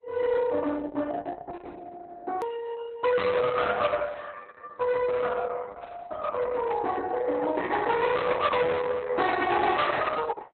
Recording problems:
codec artefacts; Opus, log-spectral distance 4 dB, nothing above 3.9 kHz
distortion; hard clipping, uneven, signal-to-distortion ratio 10 dB
click at an edit; at 2.5 s

